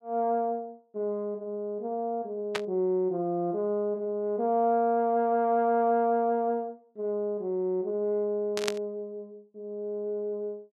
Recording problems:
burst of static; at 2.5 s and at 8.5 s; peak +3 dB vs average level

